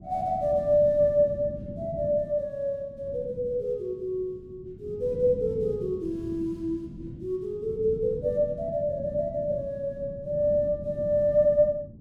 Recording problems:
wind on the microphone; below 230 Hz, SNR 14 dB

